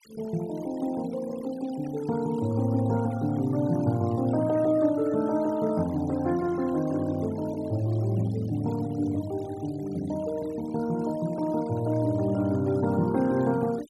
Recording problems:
noise reduction artefacts; signal-to-artefact ratio 20 dB

